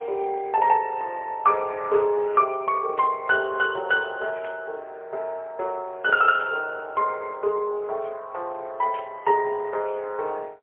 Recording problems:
telephone audio; 370 Hz to 3.6 kHz, AMR-NB, then MP3
static burst; 4 times, first at 3 s; peak -13 dB vs average level

